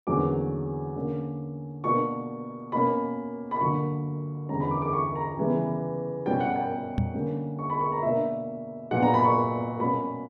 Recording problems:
knock on the microphone; at 7 s; peak +4 dB vs average level

